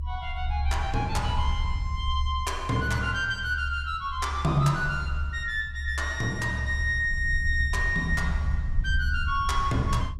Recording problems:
low-frequency rumble; below 72 Hz, SNR 4 dB

